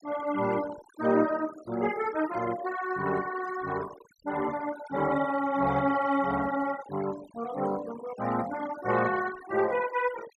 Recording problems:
denoising artefacts; signal-to-artefact ratio 15 dB

